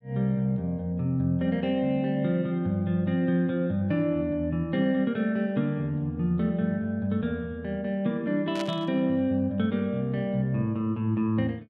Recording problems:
burst of static; at 8.5 s; peak -6 dB vs average level

